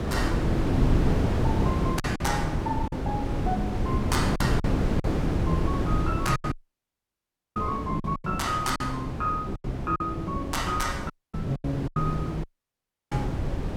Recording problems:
wind noise; below 310 Hz, SNR -2 dB
lost packets; 8% of the sound replaced, filled with silence
dropout; at 6.5 s for 1 s, at 11 s and at 12 s for 0.5 s

